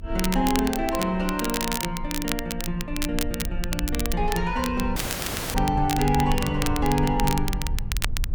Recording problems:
rumble; below 64 Hz, strongest tone 26 Hz, SNR 7 dB
crackle; vinyl, SNR 6 dB
audio cutting out; at 5 s for 0.5 s

